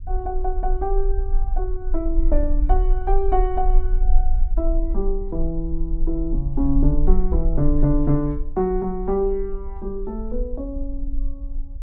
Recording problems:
rumble; below 38 Hz, strongest tone 22 Hz, SNR 1 dB

